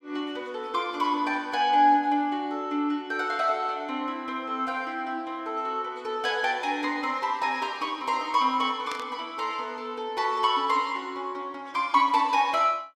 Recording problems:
static burst; at 9 s; peak -7 dB vs average level

